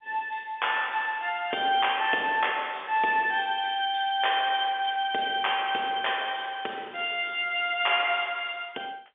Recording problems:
telephone audio; 280 Hz to 3.5 kHz, G.711

